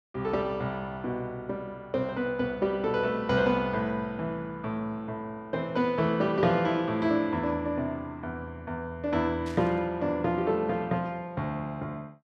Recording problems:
static burst; at 9.5 s; peak -12 dB vs average level

